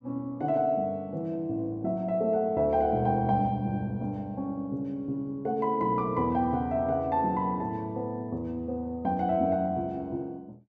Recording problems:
none

